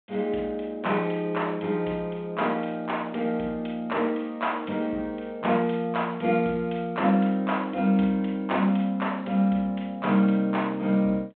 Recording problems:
phone line; 220 Hz to 3.6 kHz, G.726

